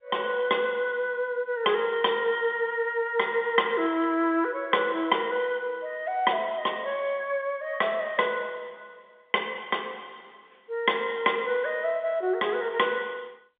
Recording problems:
telephone audio; 260 Hz to 3.6 kHz, G.711

